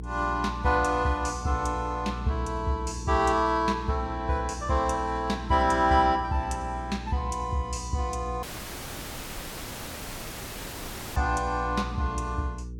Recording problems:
electrical hum; 60 Hz, harmonics up to 480 Hz, SNR 10 dB
audio cutting out; at 8.5 s for 2.5 s

